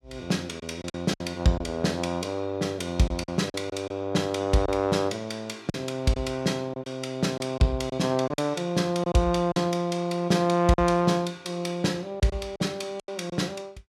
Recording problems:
lost packets; 6% of the sound replaced, filled with silence

